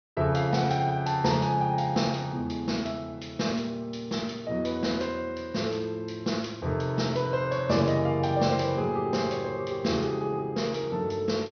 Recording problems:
treble missing; nothing above 6.1 kHz

